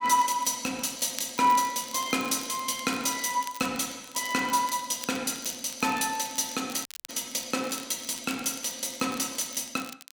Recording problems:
crackling; vinyl, SNR 16 dB
audio cutting out; at 7 s

